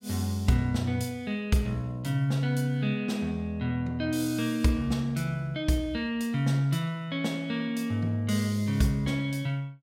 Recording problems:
none

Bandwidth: 16 kHz